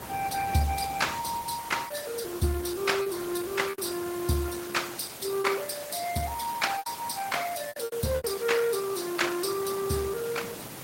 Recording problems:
lossy codec; Opus, then Opus, log-spectral distance 8 dB, nothing above 15.5 kHz
background hiss; slope -3 dB per octave, SNR 11 dB
wind noise; below 550 Hz, SNR 20 dB
lost packets; 5% of the sound replaced, filled with repeated pitch periods

